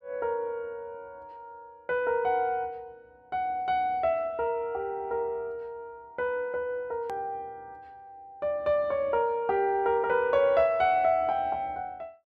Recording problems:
hard cut with a click; at 7 s

